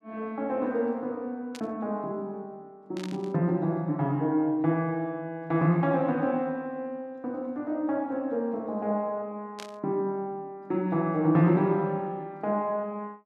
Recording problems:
static burst; at 1.5 s, at 3 s and at 9.5 s; peak -8 dB vs average level

